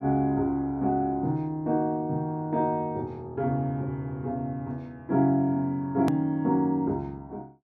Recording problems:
click at an edit; at 6 s

